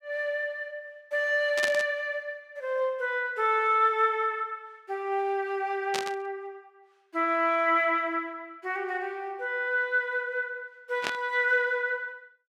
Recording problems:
static burst; at 1.5 s, at 6 s and at 11 s; peak +1 dB vs average level

